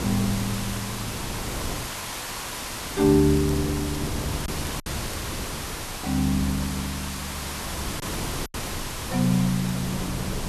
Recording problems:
background hiss; SNR 6 dB
wind noise; below 380 Hz, SNR 10 dB
lost packets; 1.7% of the sound replaced, filled with silence
crackling; from 3 to 4 s and at 4.5 s; loose cable, SNR 19 dB

